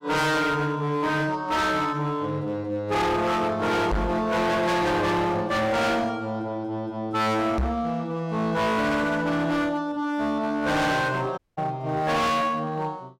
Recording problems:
distortion; hard clipping, signal-to-distortion ratio 6 dB
microphone bump; at 4 s and at 7.5 s; peak +2 dB vs average level
audio cutting out; at 11 s

